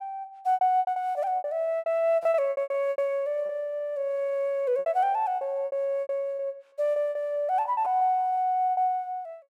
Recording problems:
packet loss; 16% of the sound replaced, filled with repeated pitch periods

